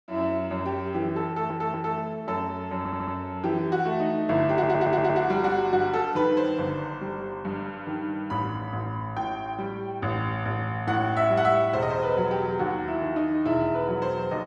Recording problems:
stutter; at 1.5 s, at 3 s and at 4.5 s

